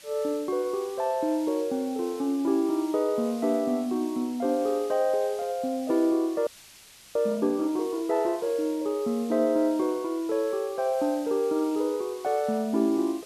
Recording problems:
background hiss; slope +2 dB per octave, SNR 20 dB
frozen audio; at 6.5 s for 0.5 s

